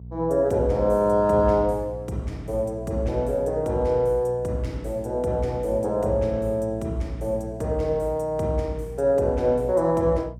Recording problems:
hum; 60 Hz, harmonics up to 420 Hz, SNR 16 dB

